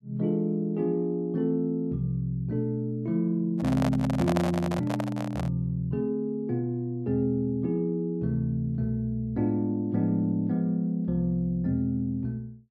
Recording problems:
handling noise; from 3.5 to 5.5 s; peak +2 dB vs average level

